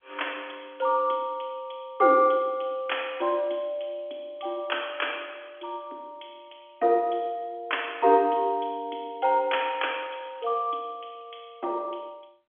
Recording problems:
telephone audio; 260 Hz to 3.4 kHz, G.711

